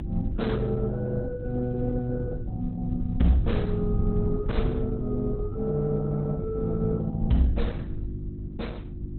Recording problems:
codec artefacts; Opus, log-spectral distance 2 dB, nothing above 4.1 kHz
mains hum; 50 Hz, harmonics up to 400 Hz, SNR 10 dB
low-frequency rumble; below 100 Hz, SNR 6 dB

